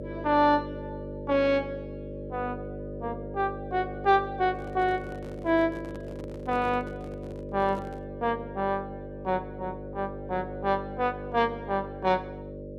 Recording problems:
mains hum; 50 Hz, harmonics up to 600 Hz, SNR 10 dB
microphone handling noise; from 4.5 to 8 s; peak -12 dB vs average level

